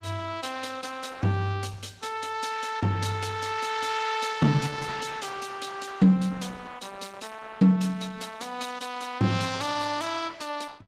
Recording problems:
codec artefacts; Opus, log-spectral distance 5 dB, nothing above 15.5 kHz

